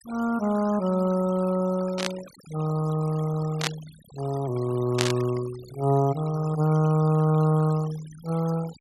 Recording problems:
denoising artefacts; signal-to-artefact ratio 19 dB
burst of static; at 2 s, at 3.5 s and at 5 s; peak +4 dB vs average level

